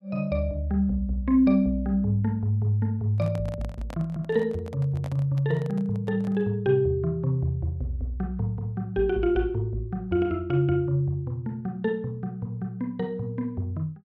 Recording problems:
microphone handling noise; from 3 to 6.5 s; peak -9 dB vs average level

